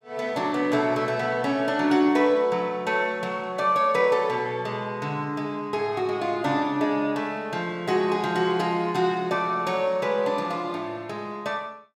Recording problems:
none

